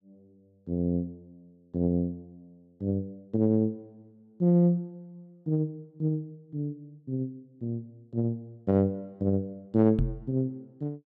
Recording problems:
microphone bump; at 10 s; peak +4 dB vs average level

